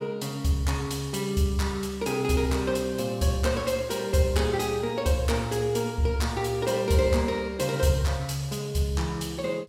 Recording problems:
none

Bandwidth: 16.5 kHz